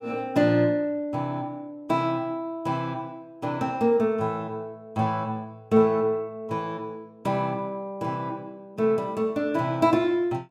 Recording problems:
none

